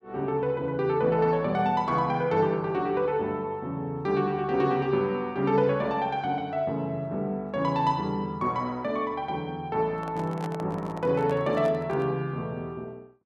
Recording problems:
handling noise; from 10 to 12 s; peak -7 dB vs average level

